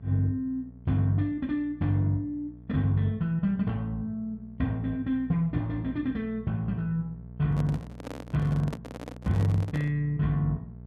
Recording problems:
hum; 60 Hz, harmonics up to 660 Hz, SNR 17 dB
microphone handling noise; from 7.5 to 10 s; peak -5 dB vs average level

